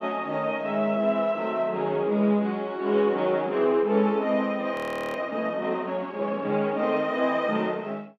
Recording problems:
audio freezing; at 5 s

